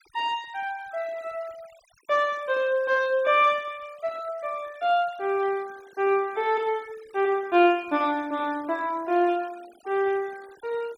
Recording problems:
denoising artefacts; signal-to-artefact ratio 25 dB

